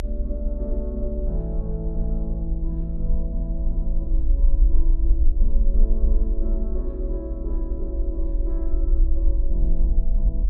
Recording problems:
rumble; below 48 Hz, strongest tone 20 Hz, SNR -9 dB

